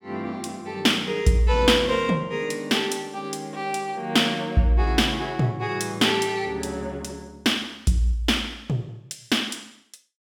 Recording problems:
none

